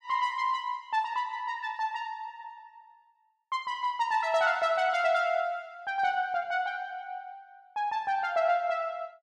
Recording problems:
none

